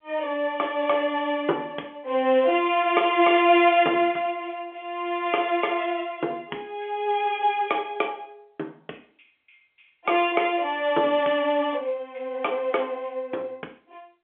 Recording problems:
telephone audio; 260 Hz to 3.4 kHz, G.711

